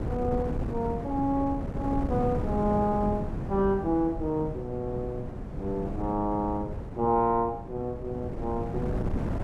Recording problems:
wind on the microphone; below 290 Hz, SNR 5 dB

